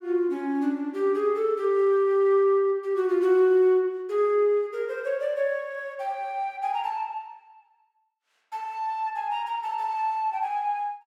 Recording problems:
none

